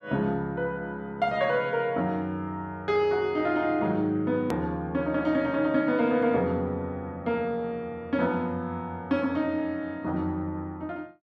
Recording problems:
hard cut with a click; at 4.5 s

